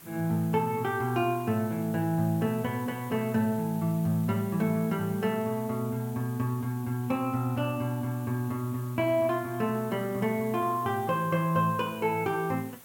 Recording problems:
background hiss; slope -3 dB per octave, SNR 19 dB

